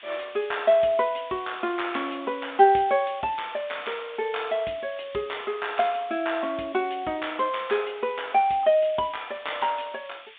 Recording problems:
telephone audio; 170 Hz to 3.7 kHz, G.726
background hiss; SNR 20 dB

